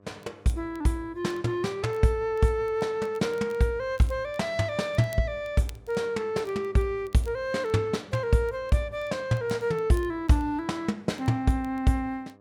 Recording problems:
hum; 50 Hz, harmonics up to 1.3 kHz, SNR 28 dB
crackling; vinyl, SNR 30 dB

